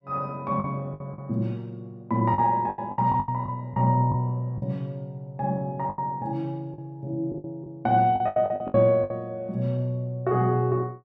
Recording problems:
packet loss; 10% of the sound replaced, filled with the last packet

